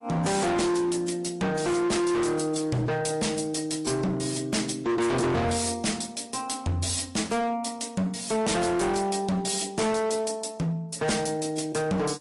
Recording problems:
lossy compression; MP3, then AAC, log-spectral distance 6 dB, nothing above 11 kHz
distortion; hard clipping, signal-to-distortion ratio 6 dB

